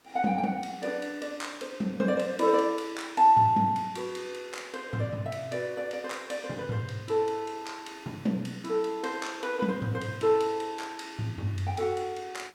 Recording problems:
hiss; slope -2 dB per octave, SNR 30 dB

